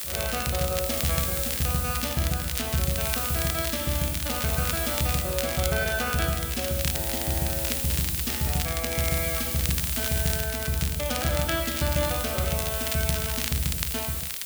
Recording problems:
background hiss; SNR 1 dB
crackling; vinyl, SNR 6 dB

